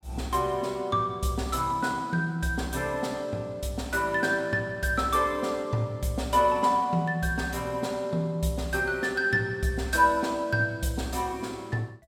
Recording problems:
none

